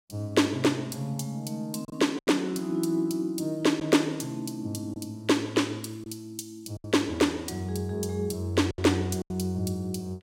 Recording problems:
lost packets; 4% of the sound replaced, filled with silence

